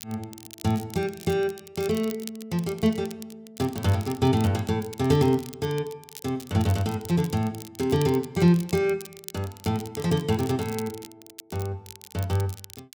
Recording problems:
crackle; vinyl, SNR 17 dB

